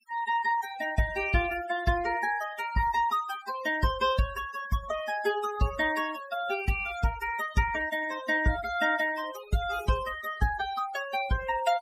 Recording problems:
noise reduction artefacts; signal-to-artefact ratio 12 dB

